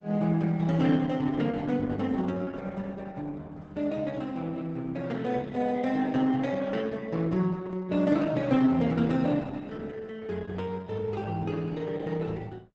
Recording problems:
lossy compression; Opus, log-spectral distance 3 dB, nothing above 8 kHz

